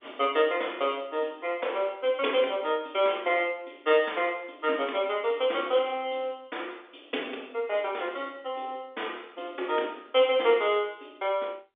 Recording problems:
phone line; 240 Hz to 3.6 kHz, G.711

